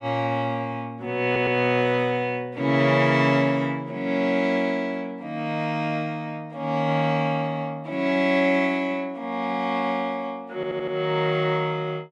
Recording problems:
stutter; at 1.5 s and at 11 s

